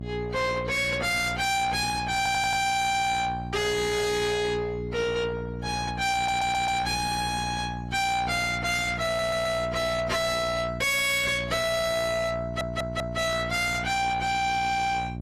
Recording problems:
lossy codec; AAC, log-spectral distance 3 dB, nothing above 12 kHz
distorted audio; soft clipping, signal-to-distortion ratio 6 dB
hum; 60 Hz, harmonics up to 1.1 kHz, SNR 10 dB
stutter; 4 times, first at 2 s

